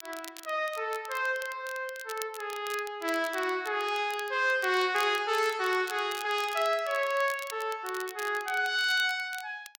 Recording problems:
crackling; vinyl, SNR 16 dB

